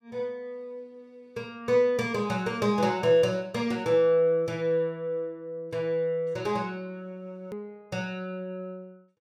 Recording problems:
edit click; at 7.5 s

